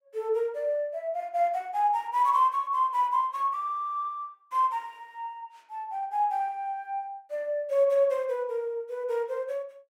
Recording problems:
none

